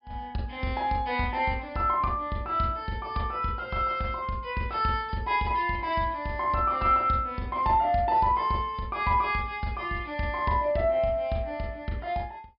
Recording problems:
low-pass filter; nothing above 5.5 kHz

